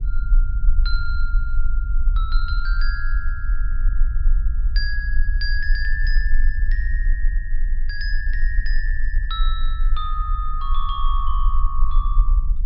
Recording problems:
treble missing; nothing above 5.5 kHz
rumble; below 40 Hz, strongest tone 20 Hz, SNR -7 dB

